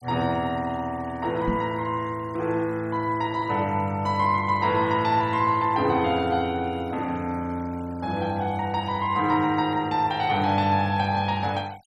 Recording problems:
denoising artefacts; signal-to-artefact ratio 26 dB
knock on the microphone; at 1.5 s; peak 0 dB vs average level

